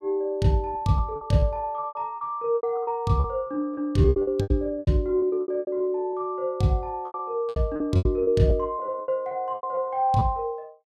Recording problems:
packet loss; 16% of the sound replaced, filled with repeated pitch periods

